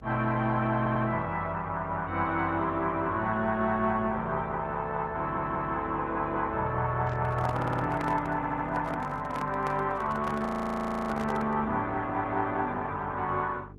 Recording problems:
lossy codec; Opus, log-spectral distance 2 dB, nothing above 13.1 kHz
mains hum; 50 Hz, harmonics up to 450 Hz, SNR 17 dB
audio stuttering; 4 times, first at 1 s
microphone handling noise; from 7 to 12 s; peak -5 dB vs average level
audio freezing; at 10 s for 0.5 s

